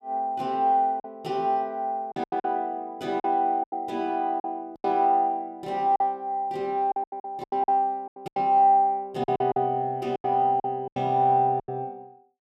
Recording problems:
packet loss; 11% of the sound replaced, filled with silence

